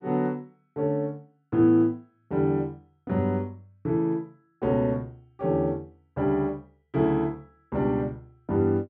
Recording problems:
none

